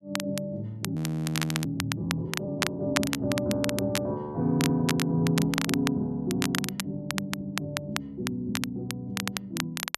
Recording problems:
crackling; vinyl, SNR 4 dB
frozen audio; at 1 s for 0.5 s
stutter; at 4.5 s, at 7.5 s and at 9 s

